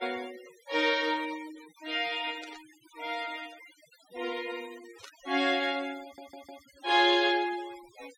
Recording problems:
noise reduction artefacts; signal-to-artefact ratio 20 dB
burst of static; at 2.5 s and at 5 s; peak -15 dB vs average level
audio stuttering; at 6 s

